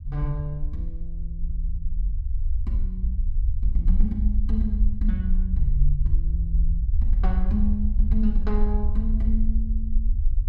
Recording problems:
low-frequency rumble; below 56 Hz, SNR -6 dB

